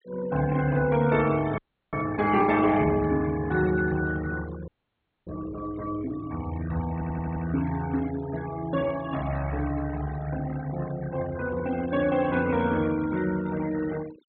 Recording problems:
treble missing; nothing above 4.2 kHz
denoising artefacts; signal-to-artefact ratio 16 dB
audio freezing; at 1.5 s and at 4.5 s for 0.5 s
stutter; at 7 s

